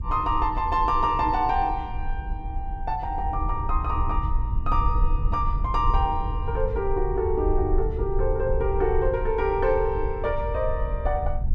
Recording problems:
low-frequency rumble; below 66 Hz, SNR 4 dB

